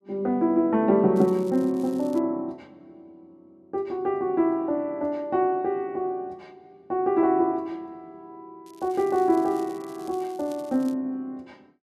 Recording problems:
crackling; from 1 to 2 s and from 8.5 to 11 s; loose cable, SNR 27 dB

